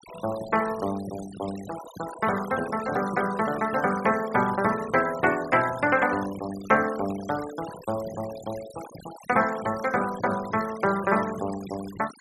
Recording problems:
noise reduction artefacts; signal-to-artefact ratio 15 dB

